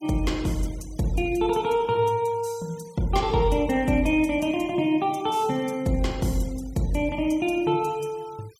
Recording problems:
noise reduction artefacts; signal-to-artefact ratio 24 dB

